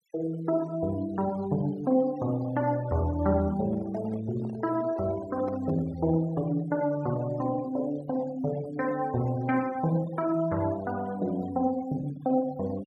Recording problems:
denoising artefacts; signal-to-artefact ratio 22 dB
microphone handling noise; from 3.5 to 6 s; peak -8 dB vs average level

